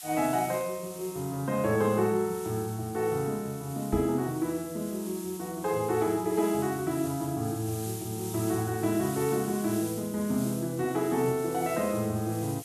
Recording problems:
background hiss; slope +4 dB per octave, SNR 13 dB
knock on the microphone; at 4 s; peak 0 dB vs average level

